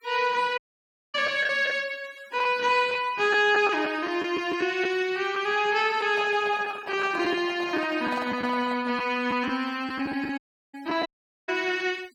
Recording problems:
noise reduction artefacts; signal-to-artefact ratio 23 dB
packet loss; 5% of the sound replaced, filled with the last packet
dropout; at 0.5 s for 0.5 s, at 10 s and at 11 s
microphone handling noise; from 6 to 9 s; peak -7 dB vs average level

